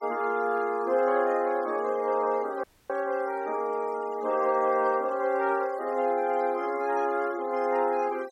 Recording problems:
denoising artefacts; signal-to-artefact ratio 23 dB
dropout; at 2.5 s

